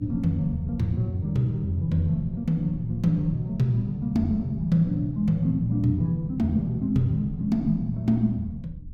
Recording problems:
low-frequency rumble; below 94 Hz, SNR 17 dB

